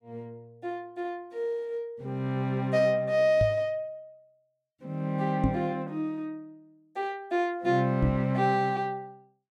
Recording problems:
microphone thump; at 3.5 s, at 5.5 s and at 8 s; peak +5 dB vs average level

